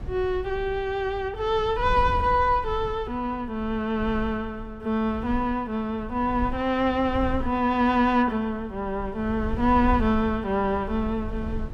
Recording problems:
rumble; below 84 Hz, SNR 12 dB

